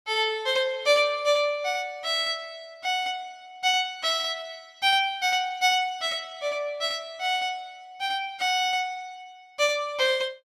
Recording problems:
none

